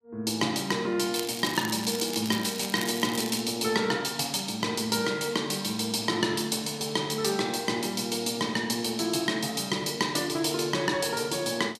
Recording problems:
crackle; from 1 to 3.5 s; loose cable, SNR 10 dB

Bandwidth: 14.5 kHz